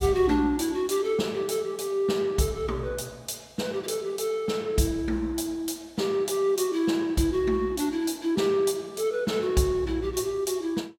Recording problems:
none

